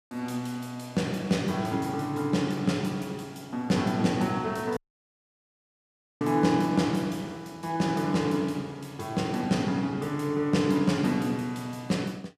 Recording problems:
audio cutting out; at 5 s for 1.5 s

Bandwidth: 14.5 kHz